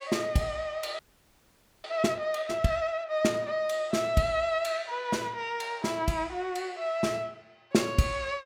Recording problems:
frozen audio; at 1 s for 1 s

